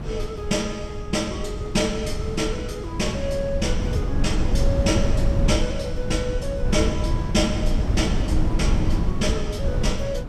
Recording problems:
wind on the microphone; below 130 Hz, SNR 0 dB

